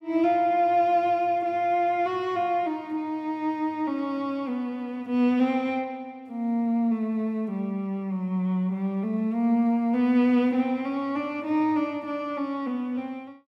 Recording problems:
none

